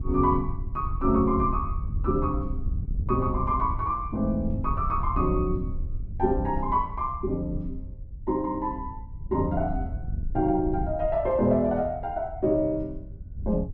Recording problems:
wind noise; below 86 Hz, SNR 7 dB

